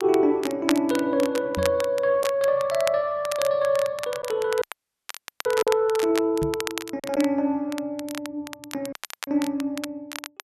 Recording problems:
crackling; vinyl, SNR 12 dB
packet loss; 1.2% of the sound replaced, filled with silence
knock on the microphone; at 1.5 s and at 6.5 s; peak -3 dB vs average level
dropout; at 4.5 s for 1 s and at 9 s

